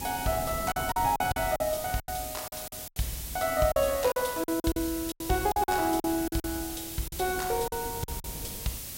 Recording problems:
hiss; SNR 8 dB
wind noise; below 290 Hz, SNR 16 dB
lost packets; 12% of the sound replaced, filled with silence

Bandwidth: 16 kHz